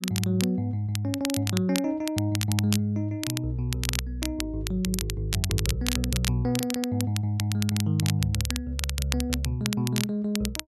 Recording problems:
crackle; vinyl, SNR 6 dB

